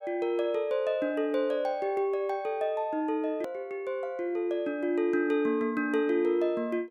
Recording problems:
hard cut with a click; at 3.5 s

